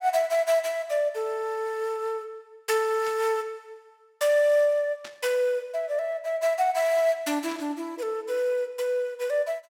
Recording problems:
static burst; at 3 s, at 5 s and at 7.5 s; peak -11 dB vs average level

